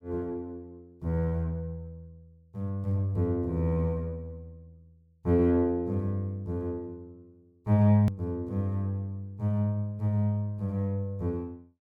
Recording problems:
edit click; at 8 s

